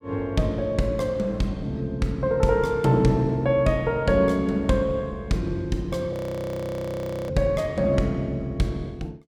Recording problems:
frozen audio; at 6 s for 1 s

